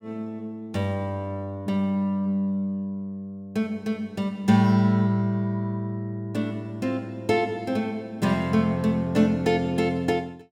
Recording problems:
none

